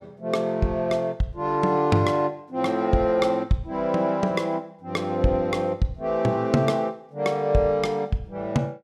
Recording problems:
none

